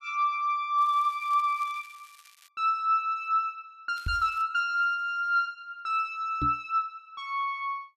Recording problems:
crackle; from 1 to 2.5 s and at 4 s; loose cable, SNR 27 dB
microphone bump; at 4 s and at 6.5 s; peak -2 dB vs average level

